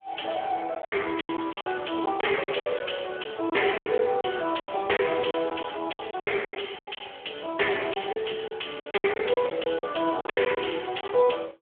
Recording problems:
phone line; 300 Hz to 3.4 kHz, Speex
distorted audio; soft clipping, signal-to-distortion ratio 8 dB
packet loss; 14% of the sound replaced, filled with silence

